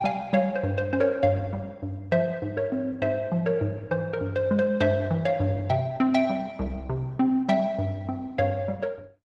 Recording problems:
lossy codec; Opus, log-spectral distance 2 dB, nothing above 11 kHz

